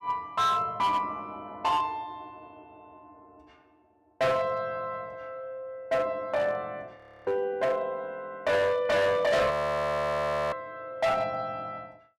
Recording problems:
distortion; hard clipping, signal-to-distortion ratio 7 dB
audio freezing; at 7 s and at 9.5 s for 1 s

